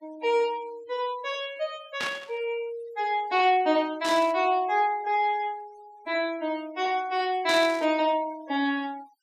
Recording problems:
noise reduction artefacts; signal-to-artefact ratio 23 dB
static burst; at 2 s, at 4 s and at 7.5 s; peak -3 dB vs average level

